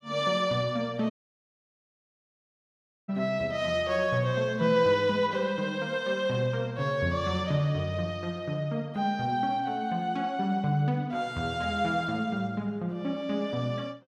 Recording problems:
audio cutting out; at 1 s for 2 s

